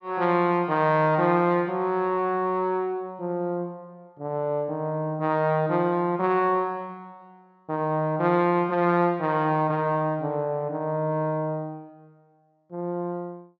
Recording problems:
treble cut off; nothing above 8 kHz

